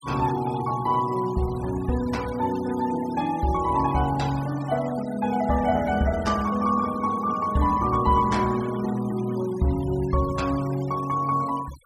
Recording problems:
denoising artefacts; signal-to-artefact ratio 18 dB

